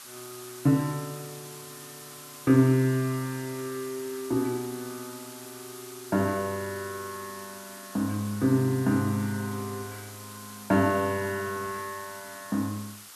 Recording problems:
background hiss; SNR 15 dB

